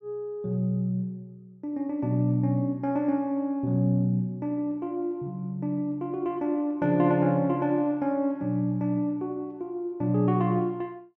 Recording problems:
none

